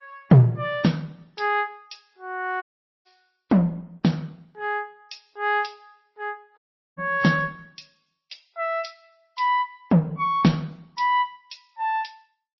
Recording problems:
lossy codec; MP3, then Opus, log-spectral distance 4 dB, nothing above 5.7 kHz
audio cutting out; at 2.5 s and at 6.5 s

